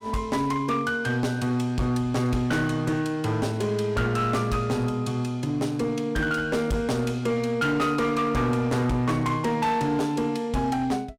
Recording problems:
distortion; hard clipping, signal-to-distortion ratio 11 dB

